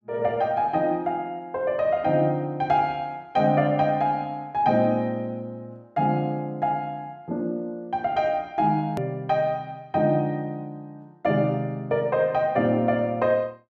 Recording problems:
click at an edit; at 9 s

